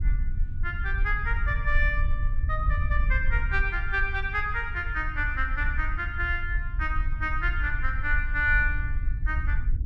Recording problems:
rumble; below 60 Hz, SNR 2 dB

